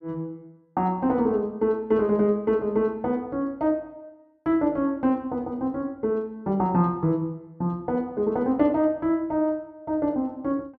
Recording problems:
none

